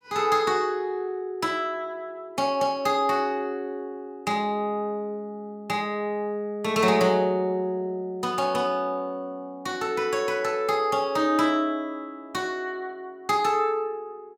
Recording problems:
none

